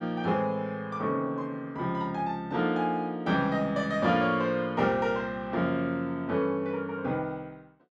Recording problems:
none

